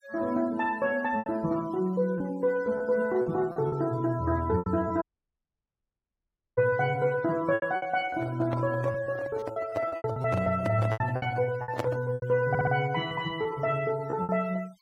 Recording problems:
denoising artefacts; signal-to-artefact ratio 21 dB
lost packets; 11% of the sound replaced, filled with repeated pitch periods
audio cutting out; at 5 s for 1.5 s
microphone handling noise; from 8 to 12 s; peak +1 dB vs average level
audio stuttering; at 12 s

